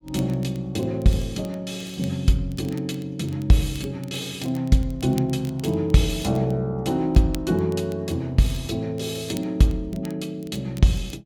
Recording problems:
crackling; vinyl, SNR 24 dB

